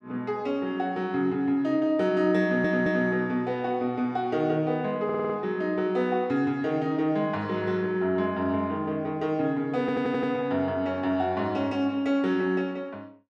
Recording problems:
audio stuttering; at 2.5 s, at 5 s and at 10 s

